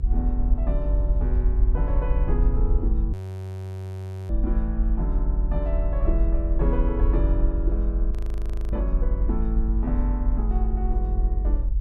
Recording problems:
low-frequency rumble; below 50 Hz, strongest tone 46 Hz, SNR -7 dB
wind on the microphone; below 120 Hz, SNR 14 dB
frozen audio; at 3 s for 1 s and at 8 s for 0.5 s

